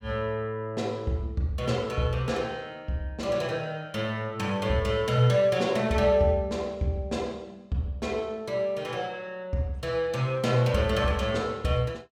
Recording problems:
none

